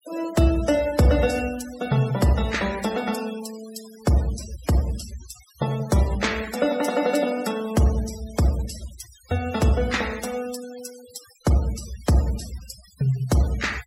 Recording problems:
denoising artefacts; signal-to-artefact ratio 16 dB

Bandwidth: 16 kHz